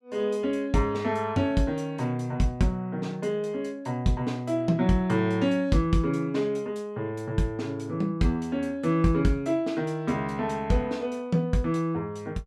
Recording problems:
none

